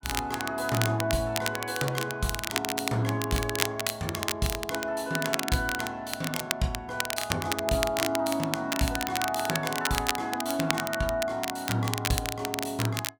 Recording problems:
crackle; vinyl, SNR 3 dB

